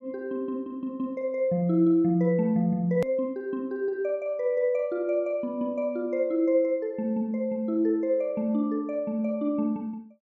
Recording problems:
hard cut with a click; at 3 s

